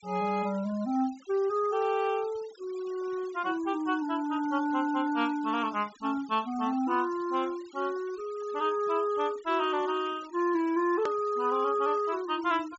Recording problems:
low-pass filter; nothing above 7.6 kHz
denoising artefacts; signal-to-artefact ratio 22 dB
edit click; at 11 s

